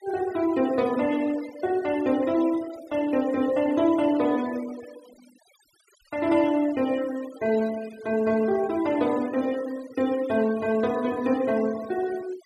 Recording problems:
denoising artefacts; signal-to-artefact ratio 20 dB

